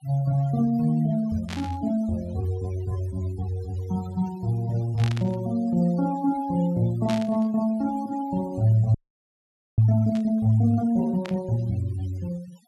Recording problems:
denoising artefacts; signal-to-artefact ratio 22 dB
burst of static; 5 times, first at 1.5 s; peak -6 dB vs average level
frozen audio; at 9 s for 1 s

